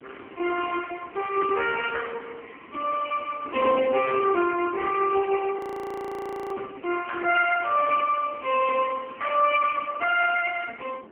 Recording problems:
phone line; 240 Hz to 2.7 kHz, AMR-NB
wind on the microphone; below 460 Hz, SNR 18 dB
audio freezing; at 5.5 s for 1 s

